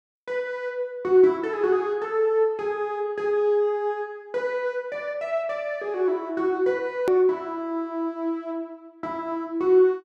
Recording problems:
edit click; at 7 s

